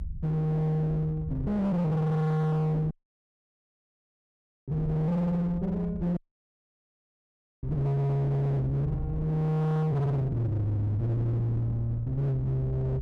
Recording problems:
distortion; hard clipping, uneven, signal-to-distortion ratio 6 dB
low-frequency rumble; below 120 Hz, SNR 12 dB
dropout; at 3 s for 2 s and at 6 s for 1.5 s

